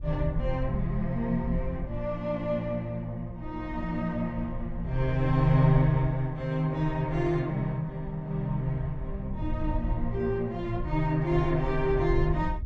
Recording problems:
wind noise; below 64 Hz, SNR 9 dB

